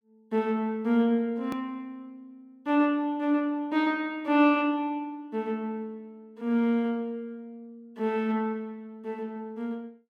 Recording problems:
edit click; at 1.5 s

